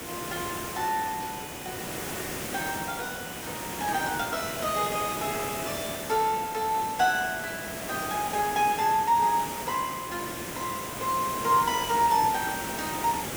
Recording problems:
background hiss; slope -4 dB per octave, SNR 6 dB

